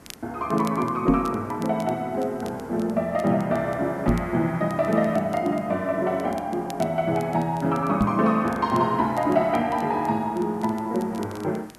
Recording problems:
hiss; SNR 23 dB
crackle; vinyl, SNR 25 dB
microphone thump; at 1 s, at 4 s and at 8 s; peak +7 dB vs average level

